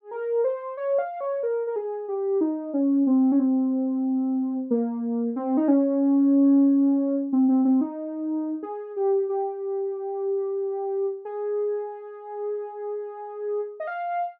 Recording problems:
none

